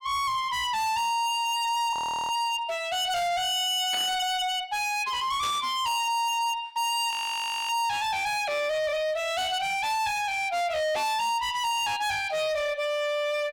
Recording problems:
distortion; hard clipping, uneven, signal-to-distortion ratio 7 dB
frozen audio; at 2 s and at 7 s for 0.5 s
static burst; at 4 s and at 5.5 s; peak -6 dB vs average level

